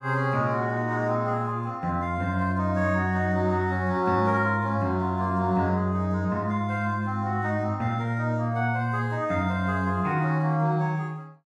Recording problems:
none

